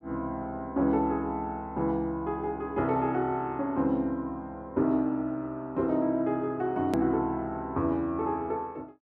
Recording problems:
hard cut with a click; at 7 s

